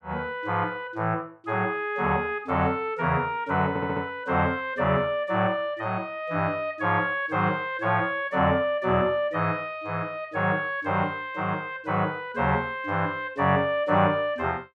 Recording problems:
stutter; at 3.5 s

